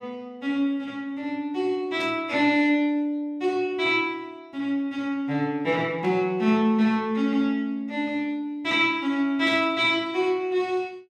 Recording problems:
burst of static; at 2 s, at 6 s and at 9.5 s; peak -13 dB vs average level

